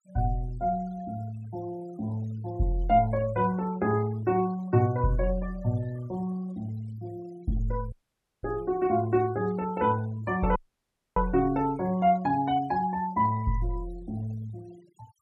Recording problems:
denoising artefacts; signal-to-artefact ratio 23 dB
dropout; at 8 s for 0.5 s and at 11 s for 0.5 s

